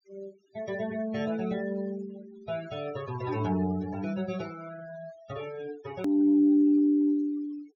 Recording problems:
treble missing; nothing above 6.9 kHz
denoising artefacts; signal-to-artefact ratio 20 dB
hard cut with a click; at 6 s

